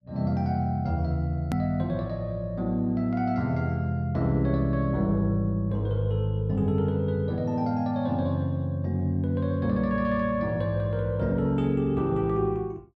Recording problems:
edit click; at 1.5 s

